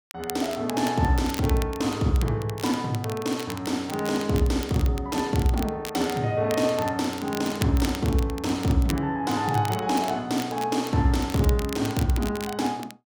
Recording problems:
crackle; vinyl, SNR 14 dB

